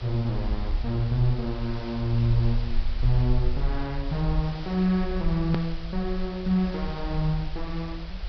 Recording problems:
treble cut off; nothing above 5.5 kHz
background hiss; SNR 15 dB
low-frequency rumble; below 50 Hz, SNR 6 dB
hard cut with a click; at 5.5 s

